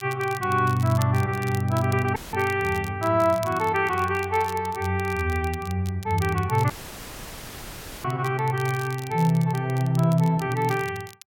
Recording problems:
crackling; vinyl, SNR 19 dB
dropout; at 2 s and at 6.5 s for 1.5 s; filled with static

